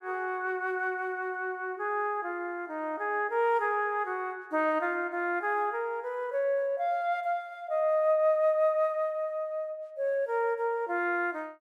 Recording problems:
none

